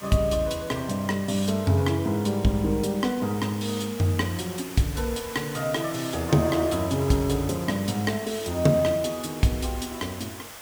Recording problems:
background hiss; SNR 14 dB

